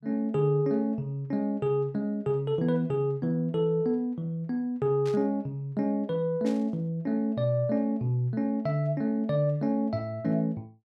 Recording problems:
burst of static; at 5 s and at 6.5 s; peak -12 dB vs average level

